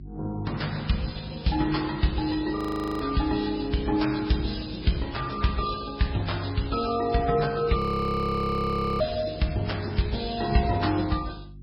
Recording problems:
lossy codec; Vorbis, then MP3, log-spectral distance 7 dB, nothing above 5 kHz
electrical hum; 50 Hz, harmonics up to 350 Hz, SNR 18 dB
frozen audio; at 2.5 s and at 8 s for 1 s

